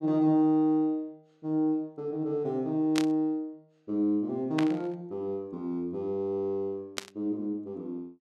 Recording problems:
burst of static; at 3 s, at 4.5 s and at 7 s; peak +2 dB vs average level

